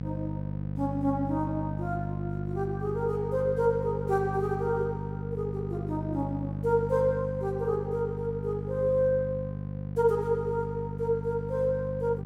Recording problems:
hum; 50 Hz, harmonics up to 550 Hz, SNR 5 dB

